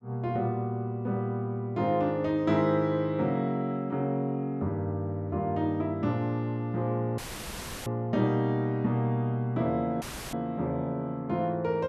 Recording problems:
dropout; at 7 s for 0.5 s and at 10 s; filled with static

